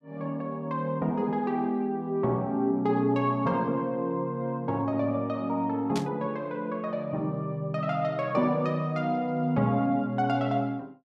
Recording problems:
static burst; at 6 s; peak -4 dB vs average level

